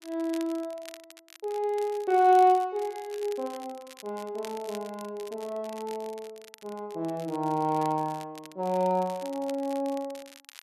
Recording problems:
crackling; vinyl, SNR 20 dB

